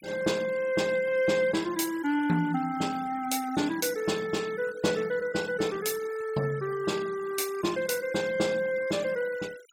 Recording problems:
noise reduction artefacts; signal-to-artefact ratio 18 dB

